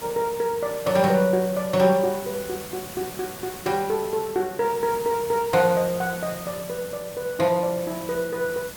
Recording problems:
background hiss; slope -2 dB per octave, SNR 13 dB

